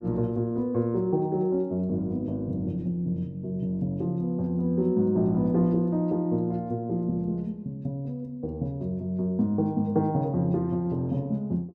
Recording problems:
none

